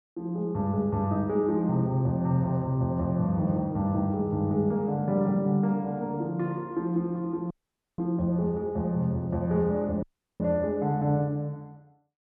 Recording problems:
audio cutting out; at 7.5 s and at 10 s

